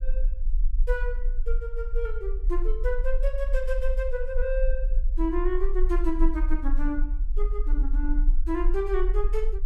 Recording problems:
low-frequency rumble; below 38 Hz, strongest tone 22 Hz, SNR -3 dB

